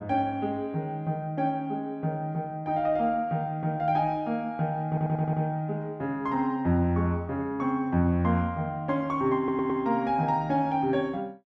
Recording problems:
audio stuttering; at 5 s and at 9.5 s

